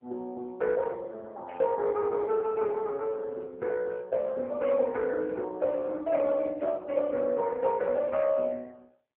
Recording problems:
phone line; 260 Hz to 3.2 kHz, AMR-NB
static burst; at 1.5 s and at 6.5 s; peak -18 dB vs average level

